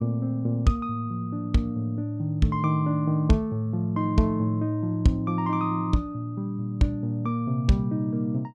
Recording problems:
none

